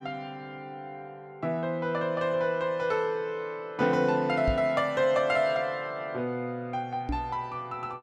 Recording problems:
knock on the microphone; at 4.5 s and at 7 s; peak +1 dB vs average level

